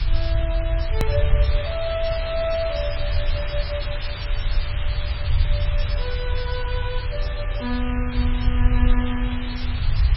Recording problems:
lossy compression; MP3, log-spectral distance 11 dB, nothing above 5.3 kHz
hiss; SNR 4 dB
low-frequency rumble; below 72 Hz, SNR -4 dB
click at an edit; at 1 s

